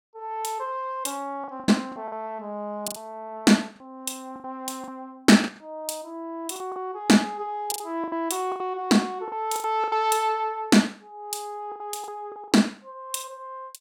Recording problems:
lost packets; 10% of the sound replaced, filled with the last packet

